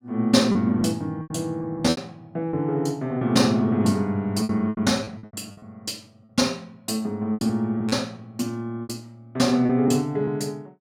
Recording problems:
packet loss; 9% of the sound replaced, filled with repeated pitch periods

